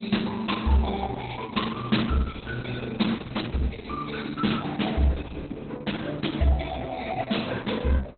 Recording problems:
codec artefacts; MP2, then Opus, log-spectral distance 6 dB, nothing above 4.1 kHz

